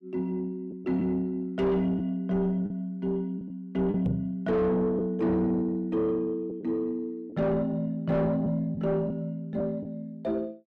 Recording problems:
distorted audio; soft clipping, signal-to-distortion ratio 7 dB
packet loss; 3% of the sound replaced, filled with the last packet
microphone thump; at 4 s; peak +3 dB vs average level

